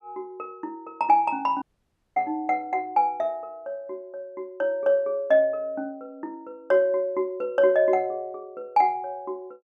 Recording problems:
audio cutting out; at 1.5 s for 0.5 s

